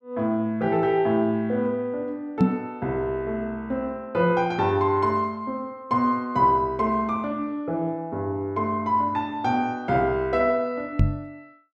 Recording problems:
microphone thump; at 2.5 s and at 11 s; peak +9 dB vs average level

